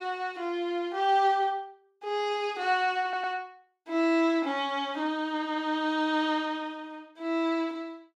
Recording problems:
audio stuttering; at 3 s

